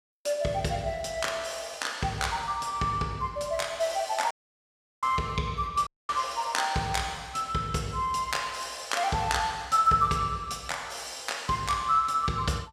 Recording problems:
dropout; at 4.5 s for 0.5 s and at 6 s

